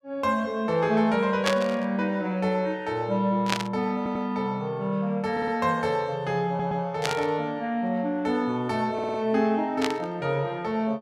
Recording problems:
burst of static; 4 times, first at 1.5 s; peak +5 dB vs average level
audio stuttering; 4 times, first at 4 s

